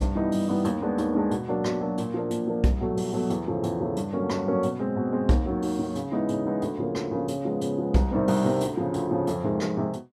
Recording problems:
none

